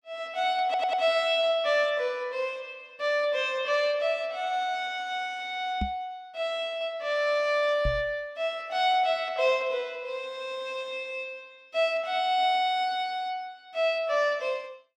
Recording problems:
stutter; at 0.5 s
microphone thump; at 6 s and at 8 s; peak 0 dB vs average level

